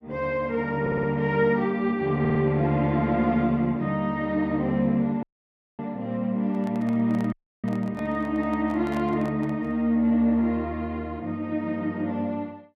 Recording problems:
stutter; at 1 s and at 2 s
audio cutting out; at 5 s for 0.5 s and at 7.5 s
handling noise; from 6.5 to 10 s; peak -10 dB vs average level

